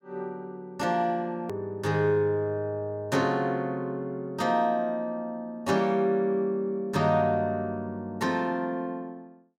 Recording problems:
click at an edit; at 1.5 s

